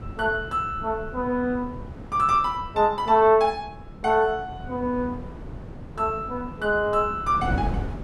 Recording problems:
wind on the microphone; below 260 Hz, SNR 13 dB

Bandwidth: 13 kHz